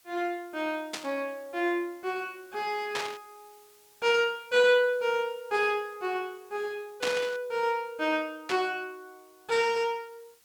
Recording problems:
hiss; slope +1 dB per octave, SNR 29 dB
burst of static; 4 times, first at 1 s; peak +1 dB vs average level

